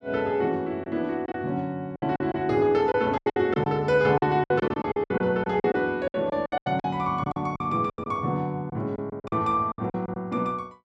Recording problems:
lost packets; 14% of the sound replaced, filled with silence

